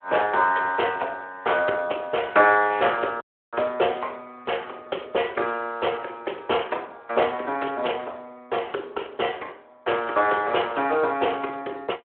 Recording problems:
telephone audio; 320 Hz to 3.3 kHz, Speex
dropout; at 3 s

